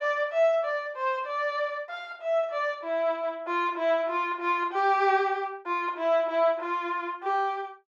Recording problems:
none

